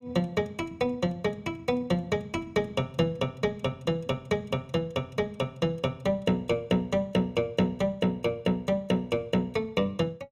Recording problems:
none

